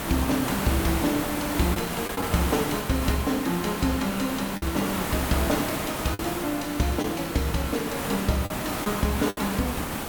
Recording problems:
background hiss; slope -5 dB per octave, SNR 3 dB
lost packets; 3% of the sound replaced, filled with the last packet

